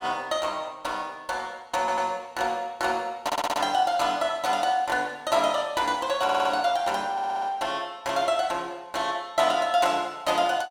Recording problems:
stutter; 4 times, first at 2 s

